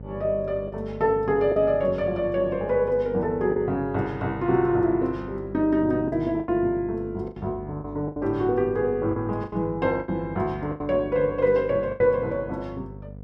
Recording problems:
hum; 50 Hz, harmonics up to 700 Hz, SNR 15 dB
packet loss; 6% of the sound replaced, filled with the last packet

